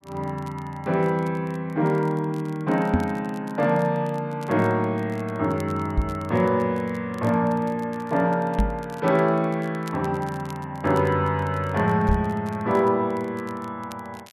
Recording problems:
crackling; vinyl, SNR 27 dB
microphone thump; 4 times, first at 3 s; peak +6 dB vs average level

